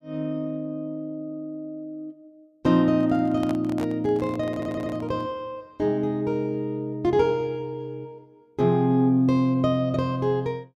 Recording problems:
microphone handling noise; from 3 to 5.5 s; peak -7 dB vs average level
stutter; at 4.5 s

